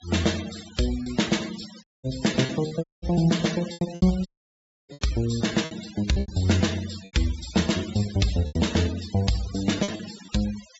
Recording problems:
treble missing; nothing above 8 kHz
noise reduction artefacts; signal-to-artefact ratio 14 dB
packet loss; 7% of the sound replaced, filled with repeated pitch periods
audio cutting out; at 2 s, at 3 s and at 4.5 s for 0.5 s

